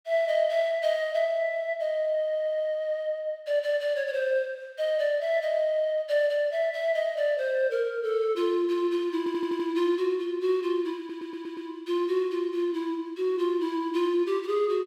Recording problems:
stutter; at 2 s, at 9 s and at 11 s

